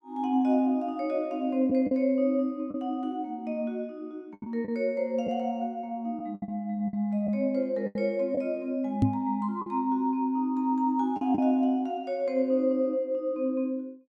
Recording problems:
lost packets; 4% of the sound replaced, filled with the last packet
knock on the microphone; at 9 s; peak +8 dB vs average level

